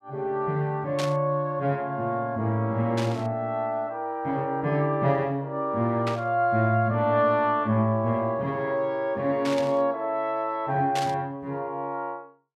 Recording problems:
static burst; 5 times, first at 1 s; peak -3 dB vs average level

